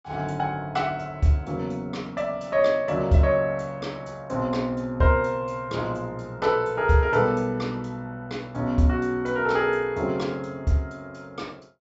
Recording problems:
treble missing; nothing above 8 kHz

